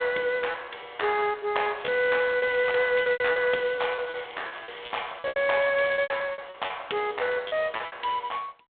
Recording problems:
telephone audio; 280 Hz to 3.9 kHz, G.726
lost packets; 15% of the sound replaced, filled with repeated pitch periods
crackling; from 2 to 3.5 s and from 3.5 to 6 s; loose cable, SNR 21 dB

